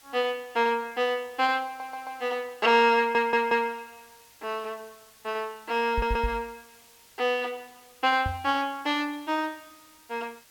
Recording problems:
background hiss; slope +1 dB per octave, SNR 26 dB
stutter; at 1.5 s, at 3 s and at 6 s
knock on the microphone; at 6 s and at 8.5 s; peak -1 dB vs average level

